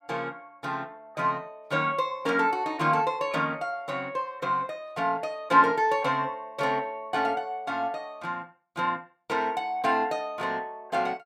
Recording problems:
none

